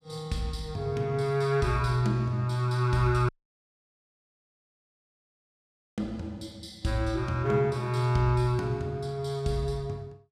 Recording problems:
dropout; at 3.5 s for 2.5 s

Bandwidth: 15 kHz